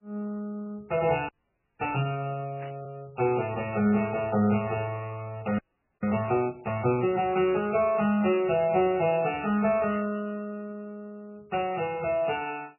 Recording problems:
lossy codec; MP2, then MP3, log-spectral distance 4 dB, nothing above 2.8 kHz
frozen audio; at 1.5 s for 0.5 s and at 5.5 s
static burst; 5 times, first at 2.5 s; peak -12 dB vs average level

